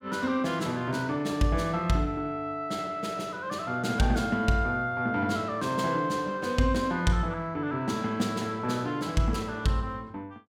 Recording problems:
none

